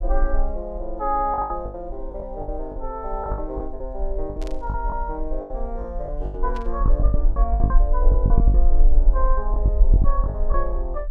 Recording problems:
rumble; below 48 Hz, SNR -6 dB
lost packets; 12% of the sound replaced, filled with the last packet
burst of static; at 4.5 s and at 6.5 s; peak -9 dB vs average level

